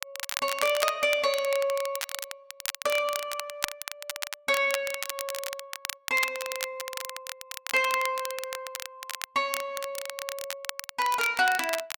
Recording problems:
crackling; vinyl, SNR 7 dB

